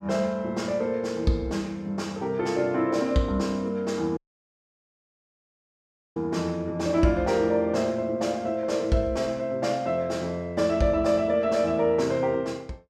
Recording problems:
audio cutting out; at 4 s for 2 s

